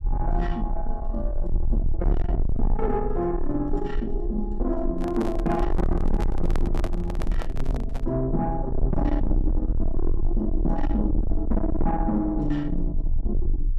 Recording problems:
distortion; soft clipping, signal-to-distortion ratio 6 dB
low-frequency rumble; below 48 Hz, strongest tone 20 Hz, SNR 2 dB
microphone handling noise; from 5 to 8 s; peak -1 dB vs average level

